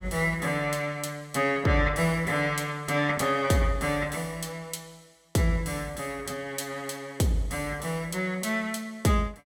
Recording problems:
none

